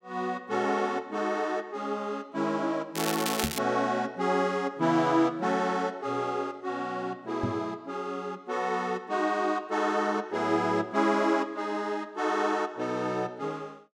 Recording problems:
crackle; at 3 s; loose cable, SNR 4 dB
knock on the microphone; at 3.5 s and at 7.5 s; peak +1 dB vs average level

